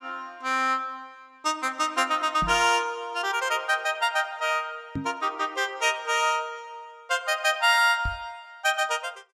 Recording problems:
knock on the microphone; at 2.5 s, at 5 s and at 8 s; peak -3 dB vs average level

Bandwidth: 17.5 kHz